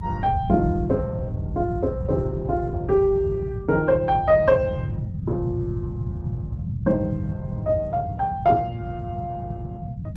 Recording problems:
lossy codec; Opus, log-spectral distance 2 dB
rumble; below 150 Hz, SNR 5 dB

